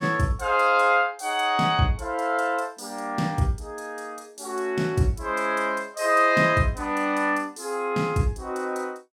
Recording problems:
none

